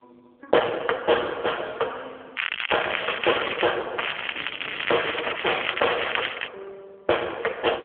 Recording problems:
telephone audio; 370 Hz to 3.3 kHz, AMR-NB
crackling; from 2.5 to 3.5 s and from 4 to 6.5 s; loose cable, SNR 3 dB

